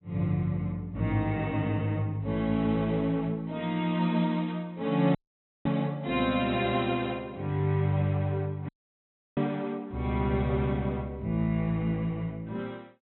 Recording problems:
treble cut off; nothing above 4 kHz
audio cutting out; at 5 s for 0.5 s and at 8.5 s for 0.5 s

